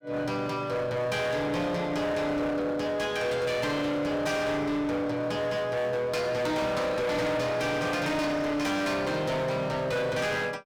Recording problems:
distortion; hard clipping, uneven, signal-to-distortion ratio 7 dB

